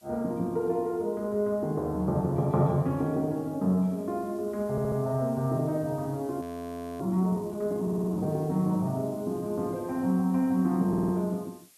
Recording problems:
hiss; slope +2 dB per octave, SNR 27 dB
stutter; at 4.5 s, at 8 s and at 11 s
audio freezing; at 6.5 s for 0.5 s

